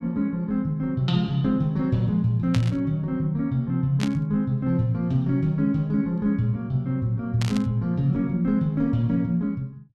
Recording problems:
burst of static; at 2.5 s, at 4 s and at 7.5 s; peak -3 dB vs average level

